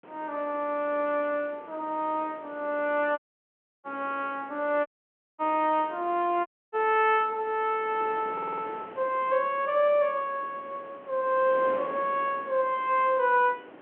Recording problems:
telephone audio; 300 Hz to 3.4 kHz, G.711
wind noise; below 1.1 kHz, SNR 19 dB
audio cutting out; at 3 s for 0.5 s, at 5 s for 0.5 s and at 6.5 s
stutter; at 8.5 s

